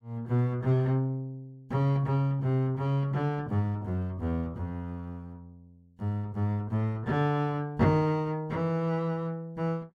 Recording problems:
none

